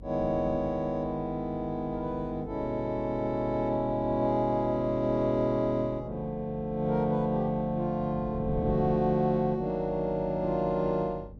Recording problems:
hum; 50 Hz, harmonics up to 500 Hz, SNR 18 dB
wind noise; below 250 Hz, SNR 16 dB

